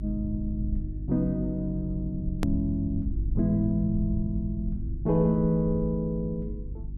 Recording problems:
hum; 50 Hz, harmonics up to 350 Hz, SNR 9 dB
low-frequency rumble; below 76 Hz, SNR 10 dB
click at an edit; at 2.5 s

